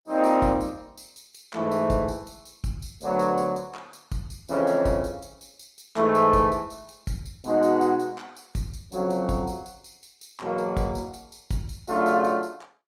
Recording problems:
lossy codec; Opus, log-spectral distance 4 dB, nothing above 18.9 kHz

